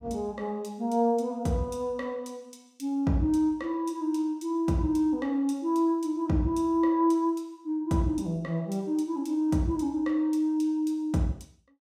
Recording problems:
none

